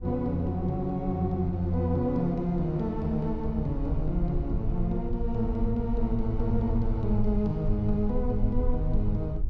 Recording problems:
rumble; below 60 Hz, SNR 6 dB

